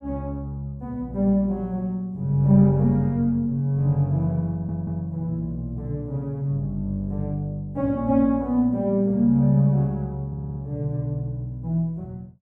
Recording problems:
stutter; at 4.5 s and at 10 s

